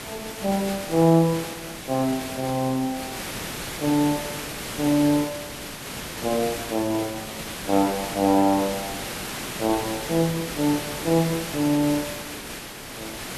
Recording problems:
background hiss; slope -3 dB per octave, SNR 8 dB

